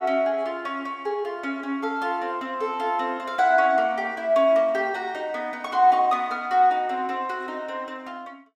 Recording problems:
none

